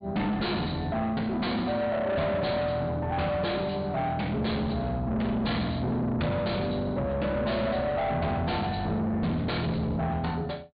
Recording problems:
treble missing; nothing above 4.5 kHz
distortion; soft clipping, signal-to-distortion ratio 7 dB

